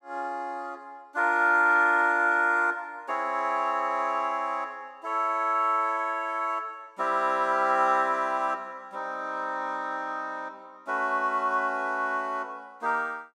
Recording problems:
none

